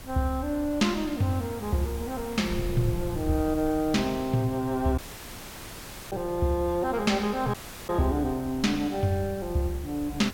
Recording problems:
background hiss; slope -3 dB per octave, SNR 18 dB
wind noise; below 110 Hz, SNR 14 dB
audio cutting out; at 5 s for 1 s and at 7.5 s

